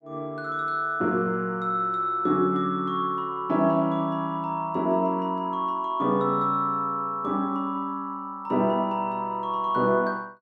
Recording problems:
none

